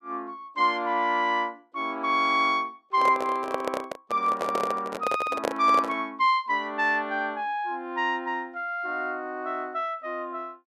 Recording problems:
microphone handling noise; from 3 to 6 s; peak +3 dB vs average level

